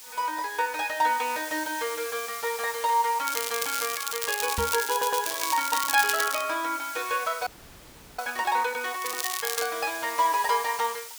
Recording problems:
background hiss; slope +3 dB per octave, SNR 10 dB
crackling; from 3.5 to 6.5 s and at 9 s; loose cable, SNR 3 dB
microphone bump; at 4.5 s; peak -2 dB vs average level
audio stuttering; at 5 s
frozen audio; at 7.5 s for 0.5 s

